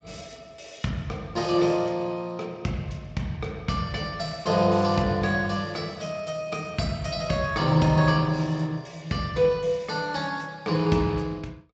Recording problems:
lossy compression; Speex, log-spectral distance 4 dB, nothing above 7.6 kHz

